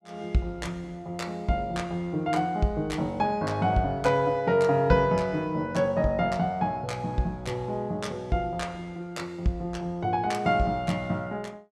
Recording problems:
none

